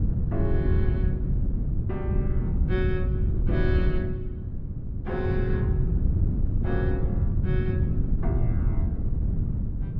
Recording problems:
wind on the microphone; below 130 Hz, SNR -7 dB

